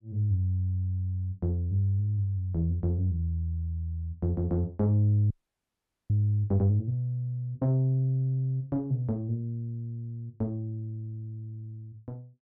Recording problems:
frozen audio; at 5.5 s for 1 s

